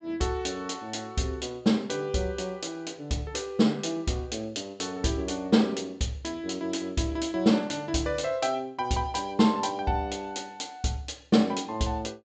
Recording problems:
treble cut off; nothing above 8 kHz

